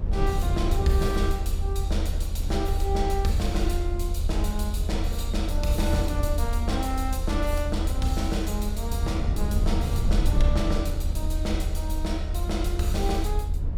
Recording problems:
low-frequency rumble; below 78 Hz, strongest tone 28 Hz, SNR -2 dB

